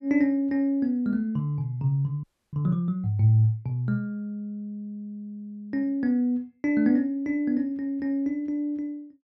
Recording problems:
audio freezing; at 2 s

